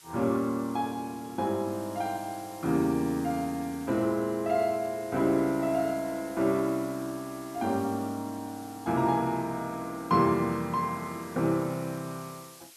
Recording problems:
background hiss; slope +2 dB per octave, SNR 20 dB

